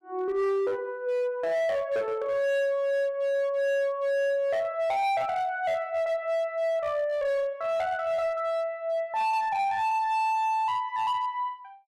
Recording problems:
distortion; hard clipping, signal-to-distortion ratio 10 dB

